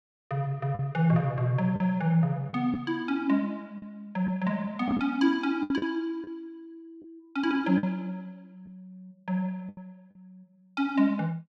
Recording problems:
lost packets; 5% of the sound replaced, filled with the last packet

